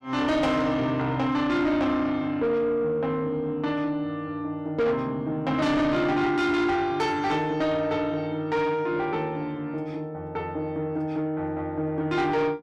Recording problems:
distortion; soft clipping, signal-to-distortion ratio 10 dB

